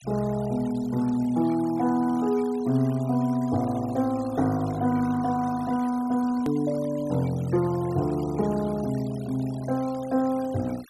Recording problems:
denoising artefacts; signal-to-artefact ratio 21 dB
hard cut with a click; at 6.5 s

